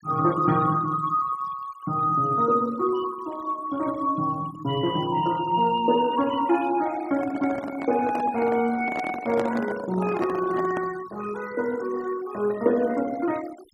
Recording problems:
noise reduction artefacts; signal-to-artefact ratio 19 dB
handling noise; from 7 to 11 s; peak -1 dB vs average level

